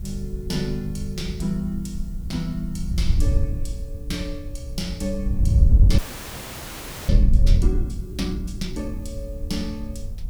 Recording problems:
electrical hum; 60 Hz, harmonics up to 1.6 kHz, SNR 26 dB
hiss; SNR 26 dB
wind on the microphone; below 80 Hz, SNR -5 dB
audio freezing; at 6 s for 1 s

